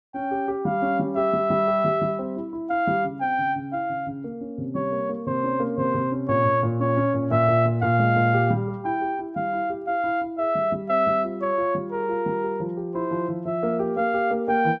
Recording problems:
none

